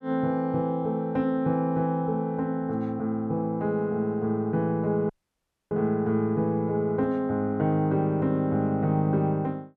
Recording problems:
dropout; at 5 s for 0.5 s

